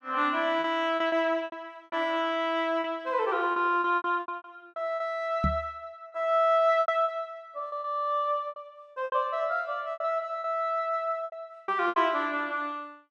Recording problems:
packet loss; 11% of the sound replaced, filled with repeated pitch periods
microphone bump; at 5.5 s; peak +3 dB vs average level

